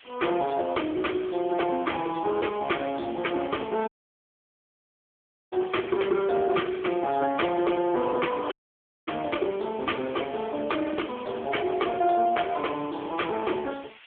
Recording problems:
phone line; 260 Hz to 3.4 kHz, AMR-NB
distorted audio; soft clipping, signal-to-distortion ratio 12 dB
hiss; SNR 22 dB
audio cutting out; at 4 s for 1.5 s and at 8.5 s for 0.5 s

